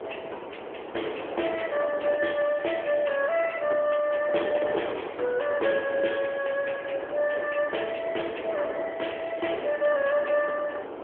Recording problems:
phone line; 280 Hz to 3.3 kHz, AMR-NB
wind on the microphone; below 820 Hz, SNR 9 dB

